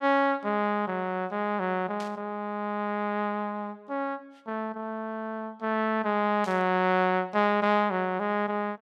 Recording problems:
burst of static; at 2 s and at 6.5 s; peak -11 dB vs average level

